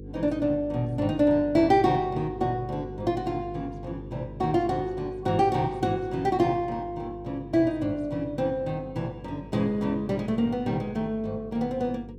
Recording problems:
hum; 50 Hz, harmonics up to 500 Hz, SNR 16 dB

